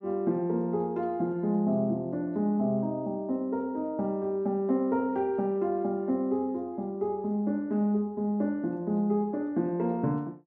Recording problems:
none

